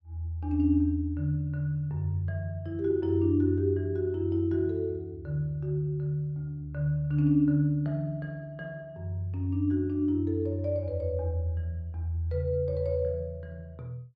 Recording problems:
none

